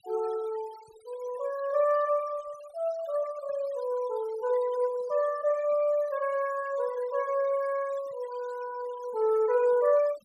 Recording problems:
denoising artefacts; signal-to-artefact ratio 21 dB

